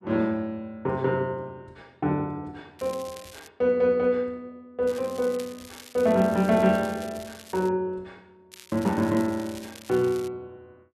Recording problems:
crackle; at 3 s, from 5 to 7.5 s and from 8.5 to 10 s; loose cable, SNR 20 dB

